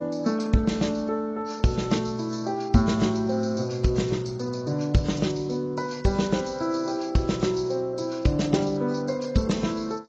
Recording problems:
lossy compression; AAC, log-spectral distance 4 dB, nothing above 7.3 kHz

